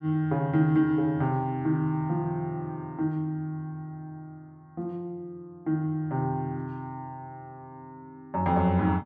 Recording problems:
none

